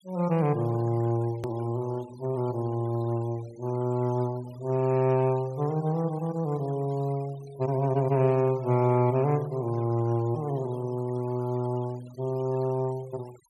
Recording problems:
denoising artefacts; signal-to-artefact ratio 24 dB
click at an edit; at 1.5 s

